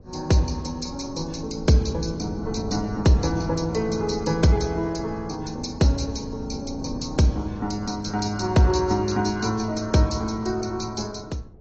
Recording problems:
lossy codec; AAC, log-spectral distance 6 dB, nothing above 6.7 kHz
wind noise; below 270 Hz, SNR 14 dB

